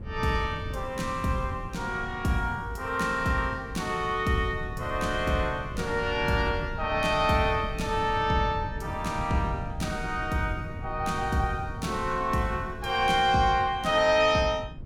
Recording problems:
wind noise; below 160 Hz, SNR 12 dB

